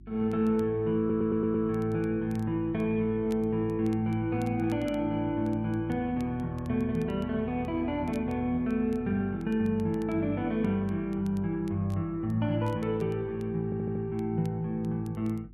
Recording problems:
mains hum; 50 Hz, harmonics up to 350 Hz, SNR 20 dB
crackling; vinyl, SNR 30 dB
audio stuttering; at 1 s and at 14 s

